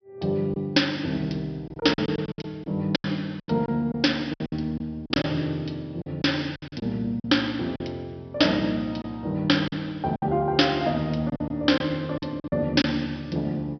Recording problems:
treble missing; nothing above 5.5 kHz
packet loss; 10% of the sound replaced, filled with silence

